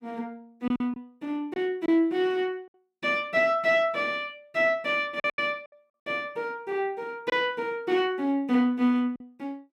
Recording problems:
lost packets; 4% of the sound replaced, filled with silence

